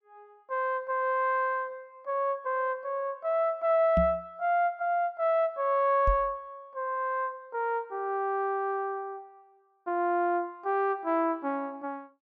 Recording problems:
knock on the microphone; at 4 s and at 6 s; peak +3 dB vs average level

